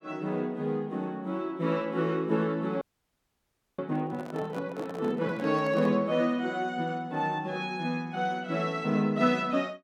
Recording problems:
audio freezing; at 3 s for 1 s
microphone handling noise; from 4 to 6 s; peak -9 dB vs average level

